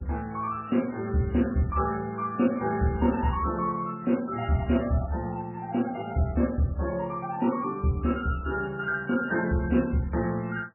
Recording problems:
lossy codec; MP3, log-spectral distance 3 dB, nothing above 2.5 kHz

